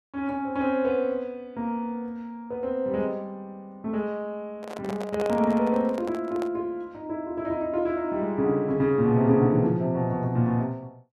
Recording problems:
microphone handling noise; from 4.5 to 6.5 s; peak -3 dB vs average level

